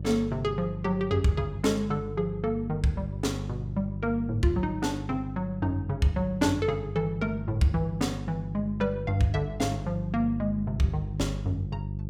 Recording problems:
hum; 50 Hz, harmonics up to 500 Hz, SNR 7 dB

